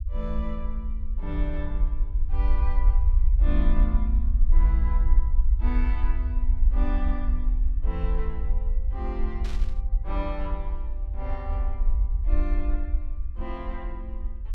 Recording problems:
low-frequency rumble; below 52 Hz, SNR -10 dB
burst of static; at 9.5 s; peak -2 dB vs average level

